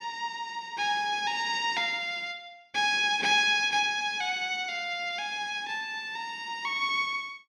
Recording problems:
none

